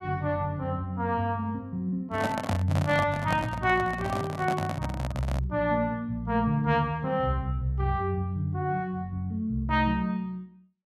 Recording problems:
microphone handling noise; from 2 to 5.5 s; peak +1 dB vs average level

